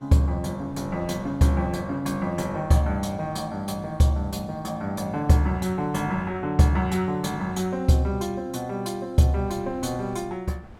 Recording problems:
wind noise; below 290 Hz, SNR 24 dB

